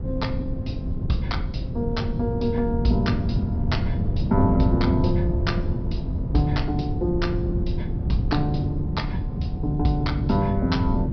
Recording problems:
treble cut off; nothing above 5.5 kHz
wind noise; below 160 Hz, SNR 0 dB

